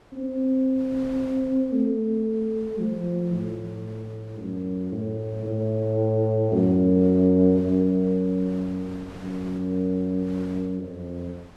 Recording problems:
wind noise; below 1.1 kHz, SNR 23 dB

